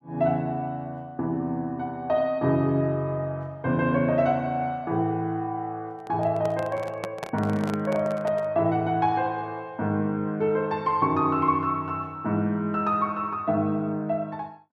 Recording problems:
microphone handling noise; from 6 to 8.5 s; peak -2 dB vs average level

